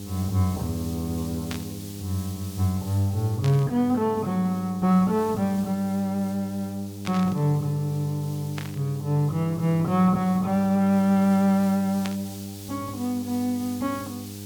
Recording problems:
hum; 50 Hz, harmonics up to 800 Hz, SNR 13 dB
hiss; SNR 19 dB
static burst; 5 times, first at 1.5 s; peak -5 dB vs average level

